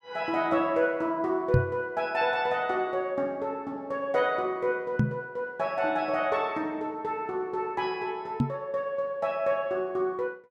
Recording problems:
microphone thump; at 1.5 s, at 5 s and at 8.5 s; peak +8 dB vs average level

